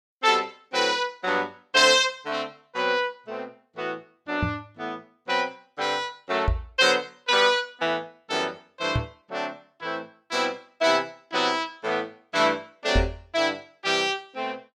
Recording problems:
knock on the microphone; 4 times, first at 4.5 s; peak +4 dB vs average level

